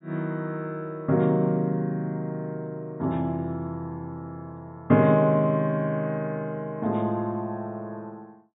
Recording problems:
low-pass filter; nothing above 4 kHz

